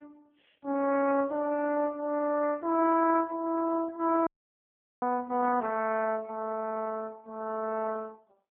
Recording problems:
phone line; 240 Hz to 2.6 kHz, AMR-NB
dropout; at 4.5 s for 1 s

